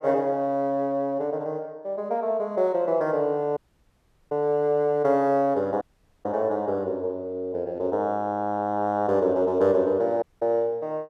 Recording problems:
dropout; at 3.5 s for 0.5 s, at 6 s and at 10 s

